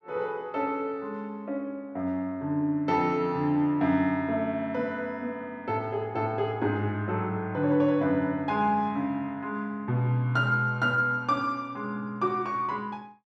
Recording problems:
none

